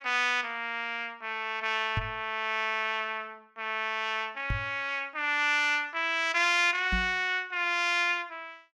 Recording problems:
microphone bump; at 2 s, at 4.5 s and at 7 s; peak 0 dB vs average level

